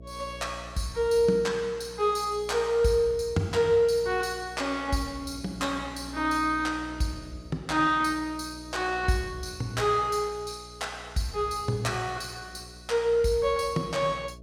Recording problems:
hum; 60 Hz, harmonics up to 660 Hz, SNR 19 dB

